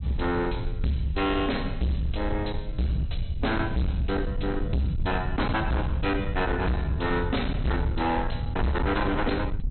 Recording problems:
treble cut off; nothing above 4.1 kHz
distortion; hard clipping, uneven, signal-to-distortion ratio 6 dB
rumble; below 120 Hz, SNR 5 dB

